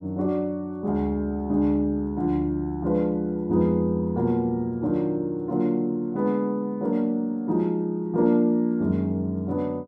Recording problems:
none

